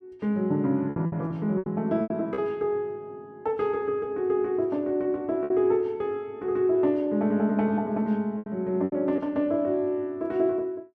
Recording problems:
packet loss; 6% of the sound replaced, filled with repeated pitch periods

